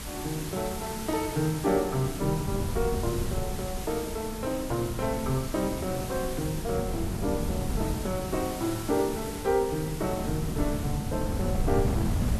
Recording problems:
background hiss; slope -1 dB per octave, SNR 10 dB
wind noise; below 210 Hz, SNR 4 dB

